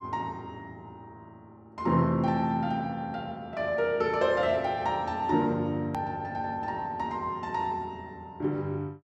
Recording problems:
hard cut with a click; at 6 s

